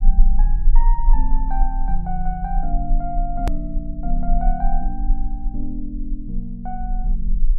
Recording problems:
low-frequency rumble; below 34 Hz, strongest tone 20 Hz, SNR -5 dB
edit click; at 3.5 s

